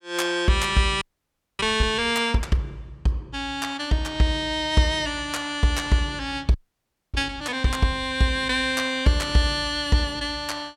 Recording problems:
audio freezing; at 1 s for 0.5 s and at 6.5 s for 0.5 s

